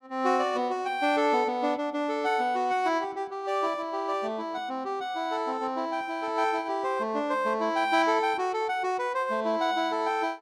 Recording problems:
none

